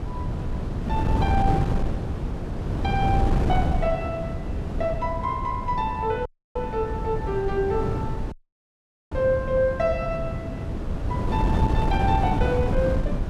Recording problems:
wind noise; below 220 Hz, SNR 0 dB
audio cutting out; at 6.5 s and at 8.5 s for 1 s

